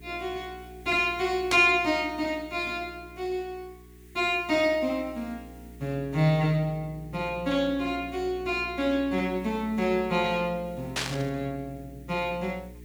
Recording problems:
electrical hum; 60 Hz, harmonics up to 420 Hz, SNR 20 dB
background hiss; SNR 30 dB
burst of static; at 1.5 s and at 11 s; peak +2 dB vs average level

